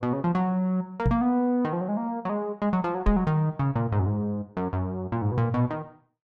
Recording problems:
knock on the microphone; at 1 s and at 3 s; peak +6 dB vs average level

